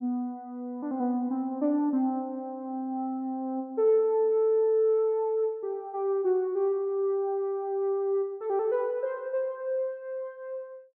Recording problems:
none

